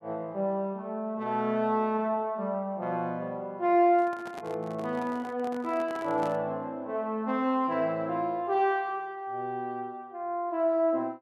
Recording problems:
microphone handling noise; from 4 to 6.5 s; peak -8 dB vs average level

